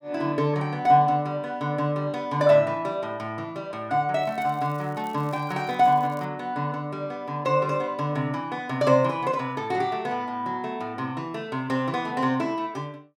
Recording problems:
crackling; from 4 to 6.5 s; loose cable, SNR 29 dB

